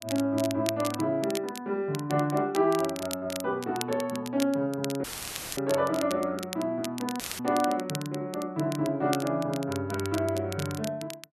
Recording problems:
crackle; vinyl, SNR 11 dB
dropout; at 5 s for 0.5 s and at 7 s; filled with static

